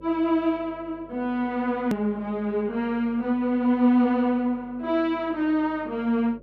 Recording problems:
hum; 50 Hz, harmonics up to 600 Hz, SNR 25 dB
edit click; at 2 s

